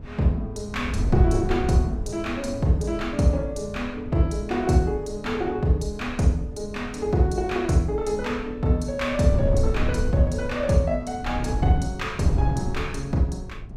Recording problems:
wind noise; below 120 Hz, SNR 7 dB

